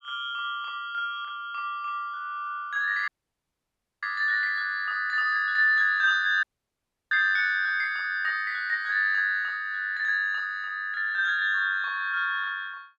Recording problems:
audio cutting out; at 3 s for 1 s and at 6.5 s for 0.5 s

